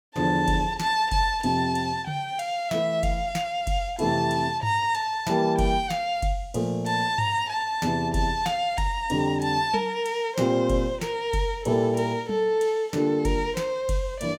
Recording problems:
none

